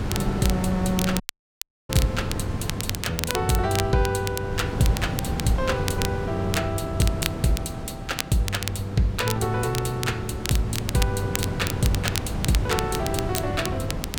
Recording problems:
wind noise; below 320 Hz, SNR 5 dB
crackle; vinyl, SNR 7 dB
dropout; at 1 s for 0.5 s

